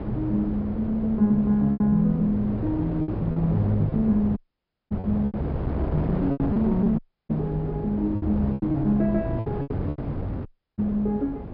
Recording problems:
low-pass filter; nothing above 5.5 kHz
hum; 50 Hz, harmonics up to 700 Hz, SNR 14 dB
wind noise; below 410 Hz, SNR 8 dB
packet loss; 8% of the sound replaced, filled with repeated pitch periods
audio cutting out; at 4.5 s for 0.5 s, at 7 s and at 10 s

